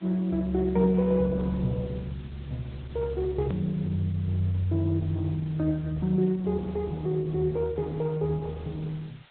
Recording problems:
low-pass filter; nothing above 4 kHz
lossy compression; Opus, log-spectral distance 4 dB
background hiss; SNR 28 dB
hard cut with a click; at 3.5 s

